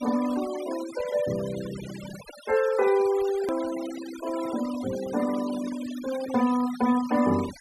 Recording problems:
denoising artefacts; signal-to-artefact ratio 14 dB
hard cut with a click; at 3.5 s

